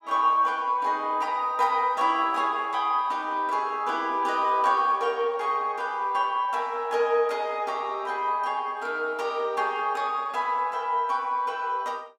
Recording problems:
none

